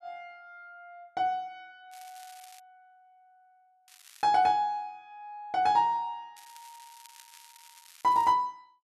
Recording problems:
crackle; at 2 s, at 4 s and from 6.5 to 8.5 s; loose cable, SNR 25 dB

